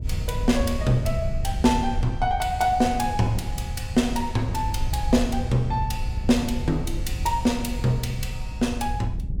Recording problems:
wind noise; below 88 Hz, SNR 6 dB

